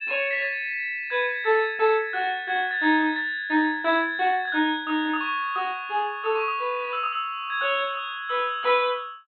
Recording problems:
treble cut off; nothing above 4.2 kHz

